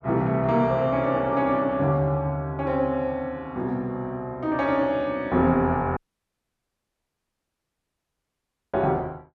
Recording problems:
audio cutting out; at 6 s for 3 s

